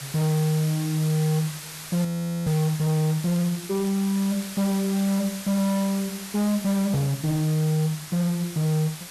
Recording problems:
distortion; hard clipping, uneven, signal-to-distortion ratio 8 dB
background hiss; slope +1 dB per octave, SNR 12 dB
frozen audio; at 2 s
crackling; from 3 to 5 s; loose cable, SNR 25 dB

